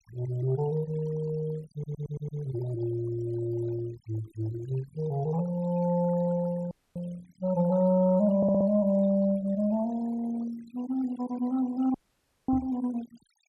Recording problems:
noise reduction artefacts; signal-to-artefact ratio 20 dB
audio stuttering; at 1.5 s and at 8.5 s
dropout; at 6.5 s and at 12 s for 0.5 s
microphone thump; at 13 s; peak -4 dB vs average level

